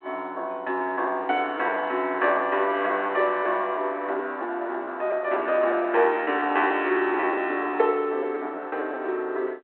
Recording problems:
phone line; 320 Hz to 3.2 kHz, G.726
lost packets; 8% of the sound replaced, filled with repeated pitch periods

